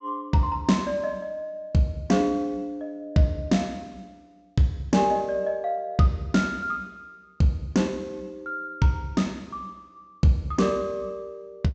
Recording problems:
treble cut off; nothing above 8 kHz

